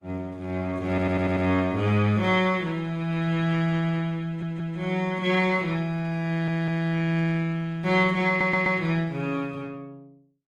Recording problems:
lossy compression; Opus, log-spectral distance 2 dB
stutter; 4 times, first at 1 s

